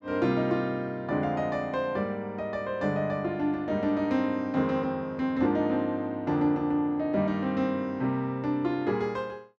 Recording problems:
none

